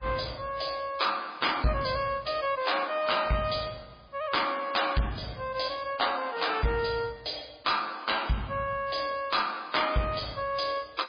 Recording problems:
codec artefacts; MP3, log-spectral distance 7 dB
distorted audio; soft clipping, signal-to-distortion ratio 10 dB

